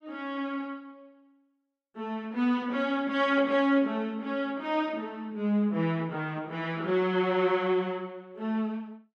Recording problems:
none

